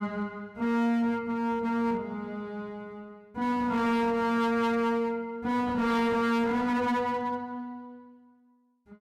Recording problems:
distortion; hard clipping, signal-to-distortion ratio 7 dB

